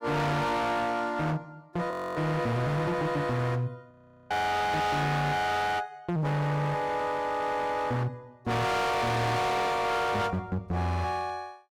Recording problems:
distorted audio; hard clipping, uneven, signal-to-distortion ratio 6 dB
audio freezing; at 2 s and at 4 s

